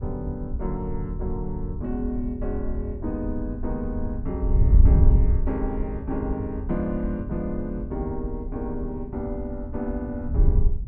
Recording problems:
wind on the microphone; below 82 Hz, SNR -3 dB

